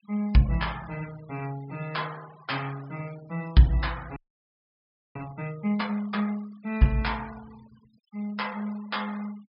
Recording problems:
low-pass filter; nothing above 5.5 kHz
denoising artefacts; signal-to-artefact ratio 22 dB
frozen audio; at 4 s for 1 s

